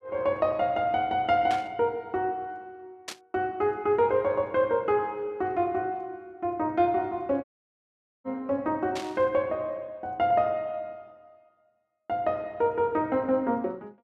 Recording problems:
burst of static; at 1.5 s, at 3 s and at 9 s; peak -4 dB vs average level
dropout; at 7.5 s for 1 s

